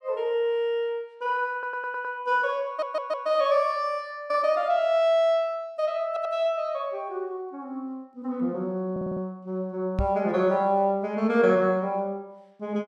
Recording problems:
stutter; 4 times, first at 1.5 s
knock on the microphone; at 10 s; peak +2 dB vs average level

